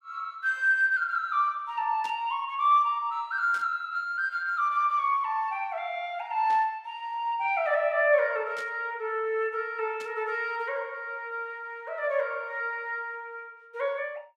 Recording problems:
static burst; 5 times, first at 2 s; peak -12 dB vs average level

